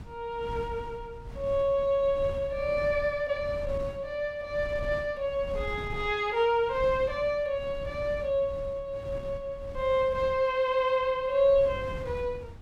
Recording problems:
wind noise; below 150 Hz, SNR 15 dB

